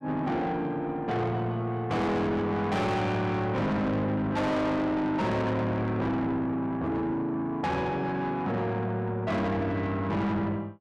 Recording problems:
distorted audio; soft clipping, signal-to-distortion ratio 6 dB

